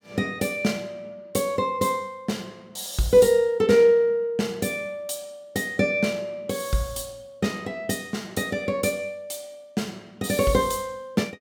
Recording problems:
none

